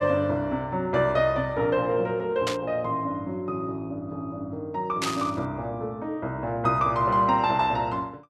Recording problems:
burst of static; at 2.5 s and at 5 s; peak +1 dB vs average level

